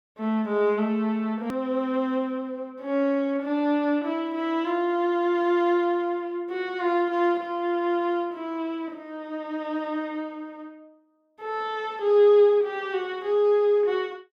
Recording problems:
click at an edit; at 1.5 s

